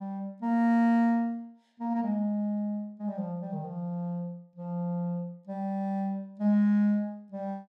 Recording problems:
none

